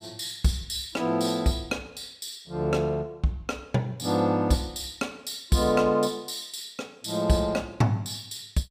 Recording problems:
none

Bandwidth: 15.5 kHz